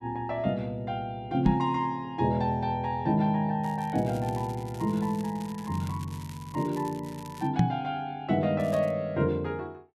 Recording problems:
knock on the microphone; at 1.5 s and at 7.5 s; peak +10 dB vs average level
crackle; from 3.5 to 7.5 s and at 8.5 s; loose cable, SNR 21 dB

